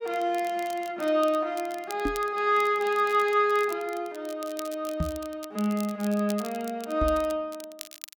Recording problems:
crackling; vinyl, SNR 18 dB
knock on the microphone; at 2 s, at 5 s and at 7 s; peak +2 dB vs average level

